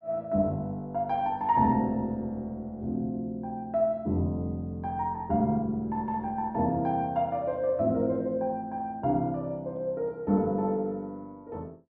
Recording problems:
none

